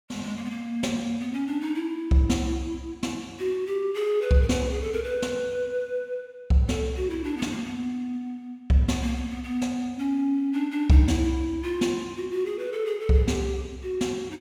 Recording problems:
none

